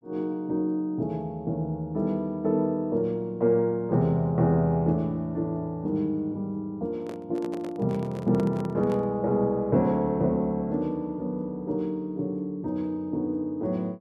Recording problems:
handling noise; from 7 to 9 s; peak -6 dB vs average level

